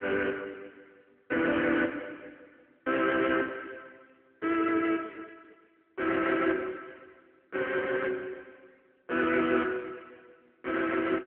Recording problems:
phone line; 280 Hz to 3.2 kHz, AMR-NB

